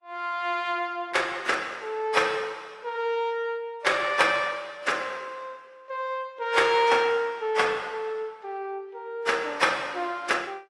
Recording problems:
lossy compression; AAC, log-spectral distance 2 dB, nothing above 11 kHz

